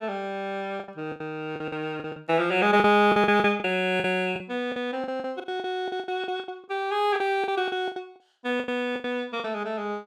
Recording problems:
lost packets; 15% of the sound replaced, filled with the last packet

